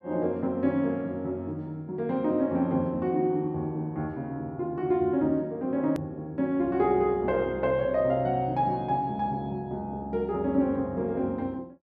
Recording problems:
hard cut with a click; at 6 s

